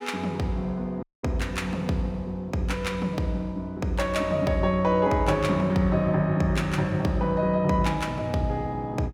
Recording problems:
dropout; at 1 s

